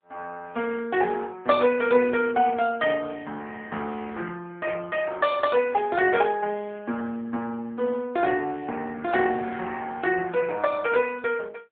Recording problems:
phone line; 170 Hz to 3.4 kHz, AMR-NB

